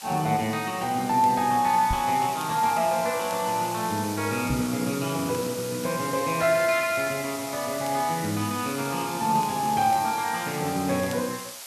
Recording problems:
hiss; SNR 11 dB
crackle; vinyl, SNR 26 dB
microphone thump; at 2 s and at 4.5 s; peak -1 dB vs average level

